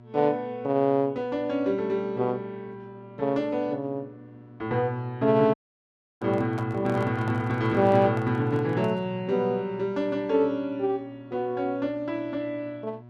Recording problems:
hum; 60 Hz, harmonics up to 1.3 kHz, SNR 22 dB
dropout; at 5.5 s for 0.5 s
microphone handling noise; from 6 to 9 s; peak -8 dB vs average level

